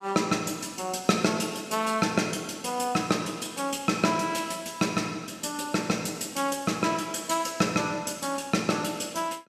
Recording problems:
none

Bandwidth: 15 kHz